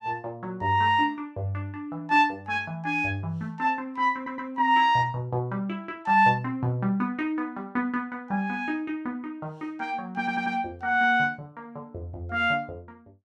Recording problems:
audio stuttering; at 4 s and at 10 s

